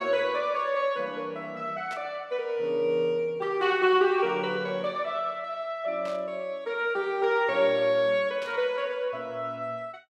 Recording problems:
static burst; at 2 s, at 6 s and at 8.5 s; peak -11 dB vs average level

